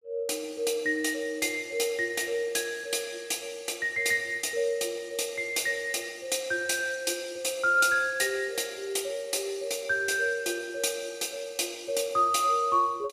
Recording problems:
none

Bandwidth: 15.5 kHz